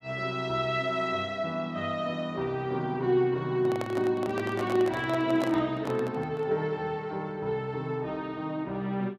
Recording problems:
handling noise; from 3.5 to 6.5 s; peak -1 dB vs average level

